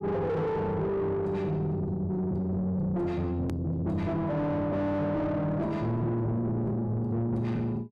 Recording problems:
distorted audio; soft clipping, signal-to-distortion ratio 5 dB
click at an edit; at 3.5 s

